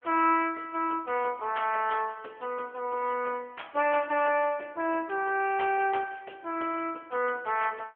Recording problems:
telephone audio; 260 Hz to 3.2 kHz, AMR-NB

